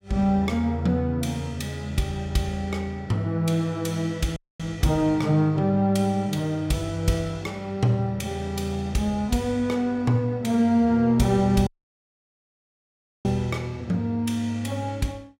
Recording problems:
dropout; at 4.5 s and at 12 s for 1.5 s

